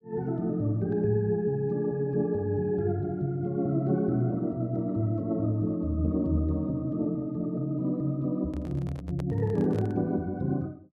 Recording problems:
microphone handling noise; from 8.5 to 10 s; peak -9 dB vs average level

